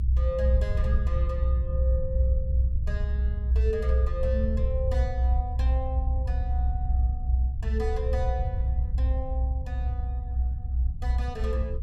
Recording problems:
rumble; below 66 Hz, strongest tone 62 Hz, SNR -9 dB

